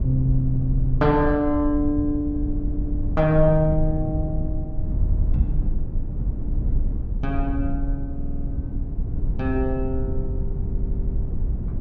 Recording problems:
low-frequency rumble; below 76 Hz, SNR 3 dB
audio stuttering; 4 times, first at 2.5 s

